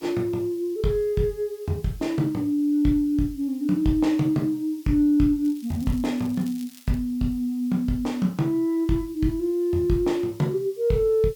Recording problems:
hiss; SNR 27 dB
crackling; from 5.5 to 7 s; loose cable, SNR 25 dB

